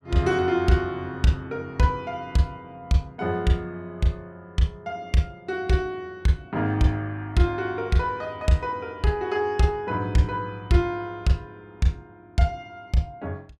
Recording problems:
none

